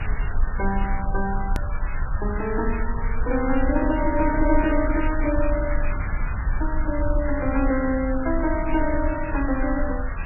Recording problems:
lossy compression; MP3, log-spectral distance 10 dB, nothing above 2.5 kHz
hiss; SNR 10 dB
rumble; below 54 Hz, strongest tone 20 Hz, SNR 4 dB
hard cut with a click; at 1.5 s

